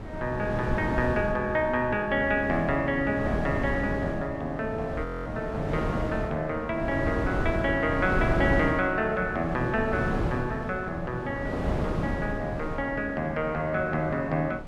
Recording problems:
wind noise; below 420 Hz, SNR 5 dB
audio freezing; at 5 s

